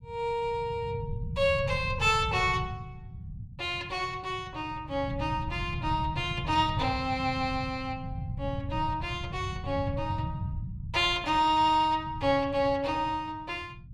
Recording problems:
rumble; below 150 Hz, SNR 9 dB

